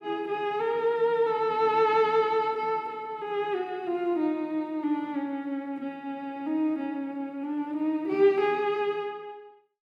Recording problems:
none

